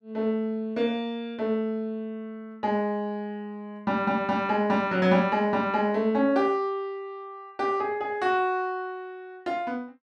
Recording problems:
none

